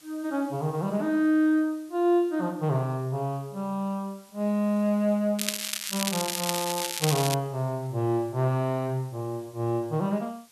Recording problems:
hiss; slope +1 dB per octave, SNR 26 dB
crackling; from 5.5 to 7.5 s; loose cable, SNR 2 dB

